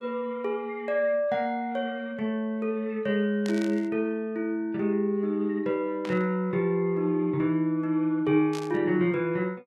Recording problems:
static burst; at 3.5 s, at 6 s and at 8.5 s; peak -8 dB vs average level

